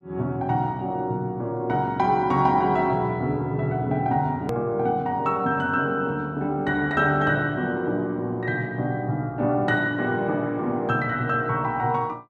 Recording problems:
edit click; at 4.5 s

